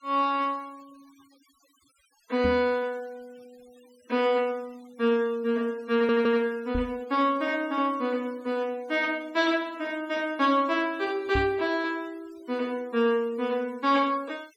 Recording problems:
denoising artefacts; signal-to-artefact ratio 27 dB
microphone bump; at 2.5 s, at 7 s and at 11 s; peak 0 dB vs average level
stutter; at 6 s

